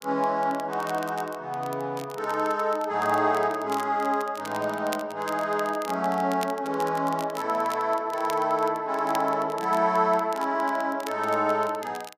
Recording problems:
crackle; vinyl, SNR 19 dB

